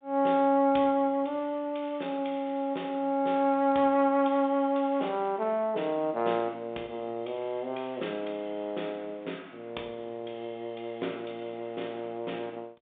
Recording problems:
phone line; 240 Hz to 3.6 kHz, G.726

